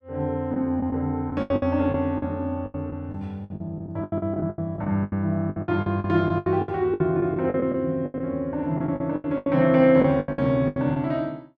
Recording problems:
packet loss; 18% of the sound replaced, filled with the last packet

